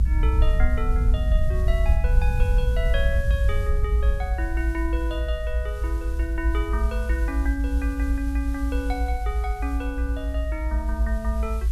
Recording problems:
hiss; SNR 19 dB
rumble; below 62 Hz, SNR -6 dB

